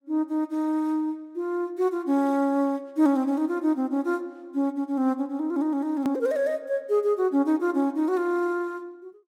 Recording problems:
click at an edit; at 6 s

